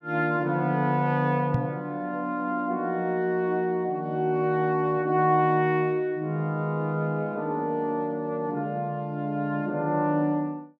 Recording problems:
microphone thump; at 1.5 s; peak +3 dB vs average level

